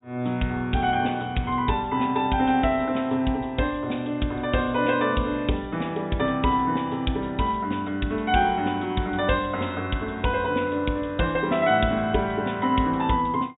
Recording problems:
treble missing; nothing above 4 kHz

